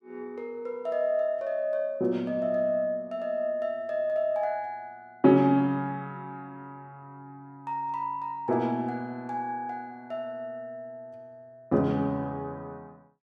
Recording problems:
none

